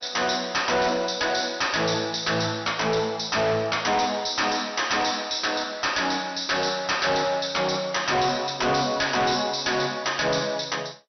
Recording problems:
codec artefacts; MP2, log-spectral distance 12 dB, nothing above 6 kHz
distortion; hard clipping, signal-to-distortion ratio 7 dB

